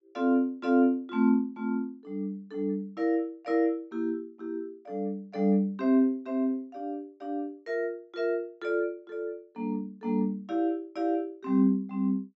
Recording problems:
low-pass filter; nothing above 7.7 kHz

